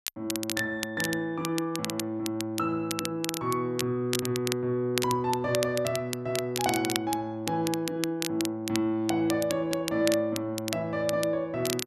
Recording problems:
crackling; vinyl, SNR 7 dB

